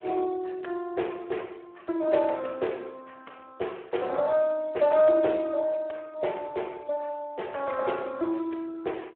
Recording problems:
telephone audio; 300 Hz to 3.6 kHz, Speex

